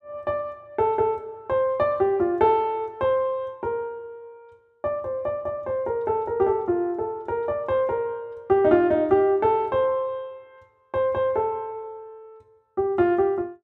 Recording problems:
none

